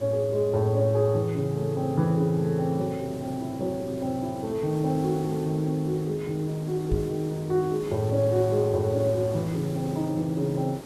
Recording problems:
background hiss; SNR 15 dB
microphone thump; at 7 s; peak +2 dB vs average level

